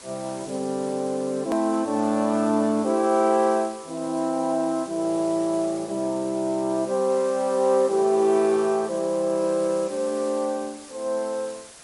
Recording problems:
codec artefacts; MP3, log-spectral distance 6 dB, nothing above 13.1 kHz
hiss; slope -1 dB per octave, SNR 18 dB
hard cut with a click; at 1.5 s

